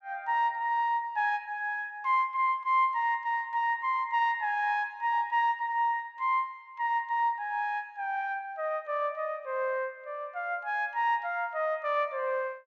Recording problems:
none

